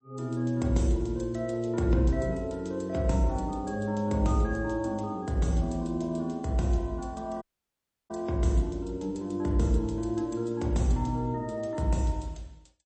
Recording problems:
codec artefacts; MP3, log-spectral distance 2 dB, nothing above 8.2 kHz
audio cutting out; at 7.5 s for 0.5 s

